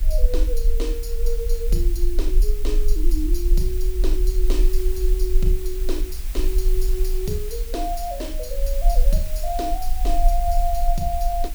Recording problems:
mains hum; 60 Hz, harmonics up to 480 Hz, SNR 21 dB
hiss; slope +1 dB per octave, SNR 10 dB
low-frequency rumble; below 40 Hz, strongest tone 22 Hz, SNR -4 dB
crackle; from 3.5 to 5 s and from 6 to 7.5 s; loose cable, SNR 28 dB

